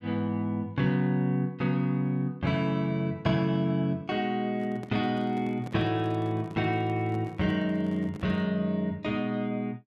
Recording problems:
microphone handling noise; from 4.5 to 8.5 s; peak -9 dB vs average level

